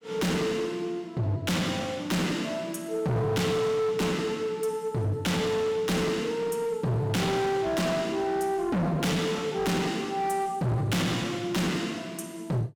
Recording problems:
distortion; hard clipping, uneven, signal-to-distortion ratio 6 dB

